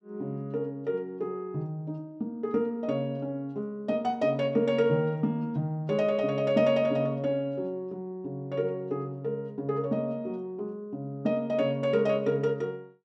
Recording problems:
none

